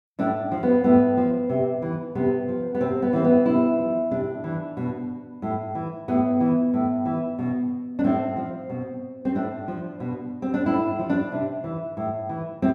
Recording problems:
none

